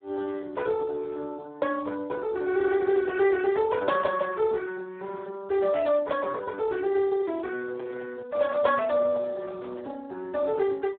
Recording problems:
telephone audio; 260 Hz to 2 kHz, Speex
microphone handling noise; from 7.5 to 10 s; peak -13 dB vs average level

